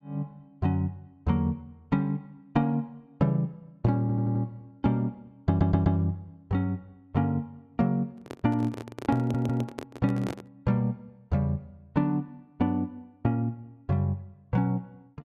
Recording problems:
stutter; at 4 s, at 5.5 s and at 9 s
handling noise; from 8 to 10 s; peak -2 dB vs average level

